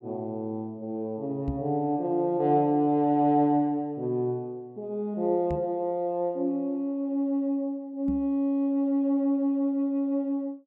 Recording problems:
knock on the microphone; at 1.5 s, at 5.5 s and at 8 s; peak -2 dB vs average level

